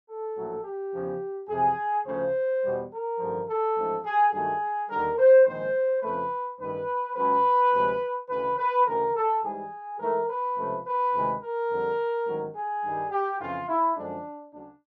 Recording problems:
none

